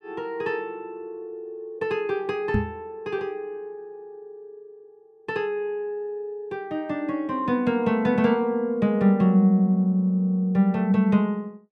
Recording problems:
microphone bump; at 2.5 s; peak +3 dB vs average level

